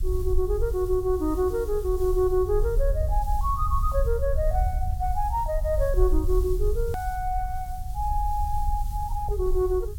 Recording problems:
hiss; SNR 21 dB
rumble; below 62 Hz, SNR 2 dB
edit click; at 7 s

